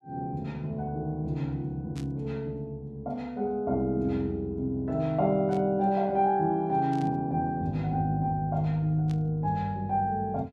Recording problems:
burst of static; 4 times, first at 2 s; peak -14 dB vs average level

